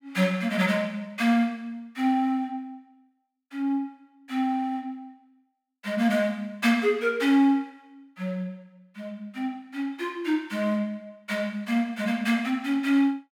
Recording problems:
none

